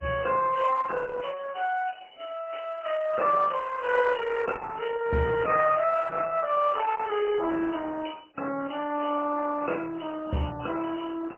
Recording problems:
codec artefacts; MP3, then Opus, log-spectral distance 7 dB, nothing above 7.6 kHz

